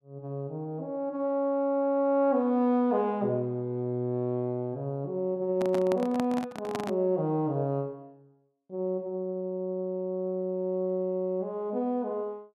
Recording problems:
microphone handling noise; from 5.5 to 7 s; peak -1 dB vs average level

